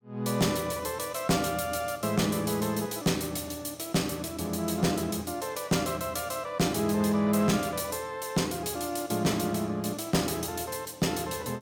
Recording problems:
distortion; hard clipping, uneven, signal-to-distortion ratio 12 dB

